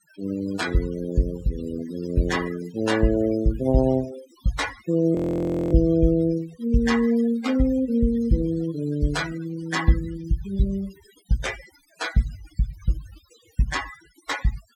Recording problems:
denoising artefacts; signal-to-artefact ratio 13 dB
frozen audio; at 5 s for 0.5 s

